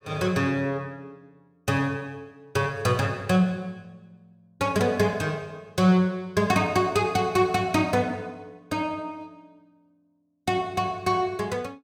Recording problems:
none

